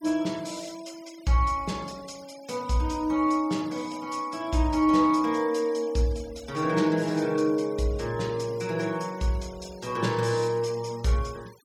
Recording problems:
denoising artefacts; signal-to-artefact ratio 22 dB

